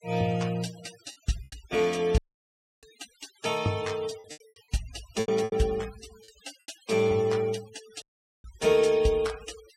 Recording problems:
denoising artefacts; signal-to-artefact ratio 19 dB
lost packets; 6% of the sound replaced, filled with repeated pitch periods
dropout; at 2 s for 0.5 s and at 8 s

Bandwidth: 16 kHz